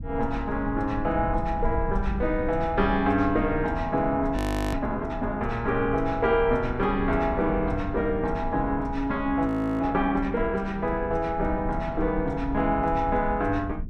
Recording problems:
low-frequency rumble; below 96 Hz, SNR 9 dB
audio freezing; at 4.5 s and at 9.5 s

